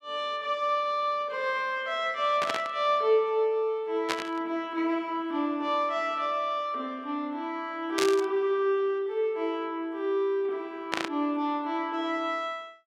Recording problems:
burst of static; 4 times, first at 2.5 s; peak +3 dB vs average level

